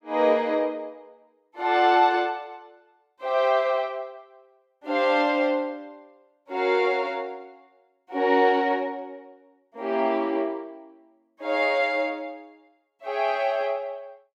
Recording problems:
none

